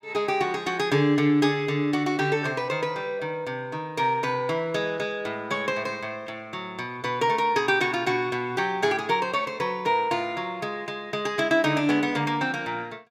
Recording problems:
none

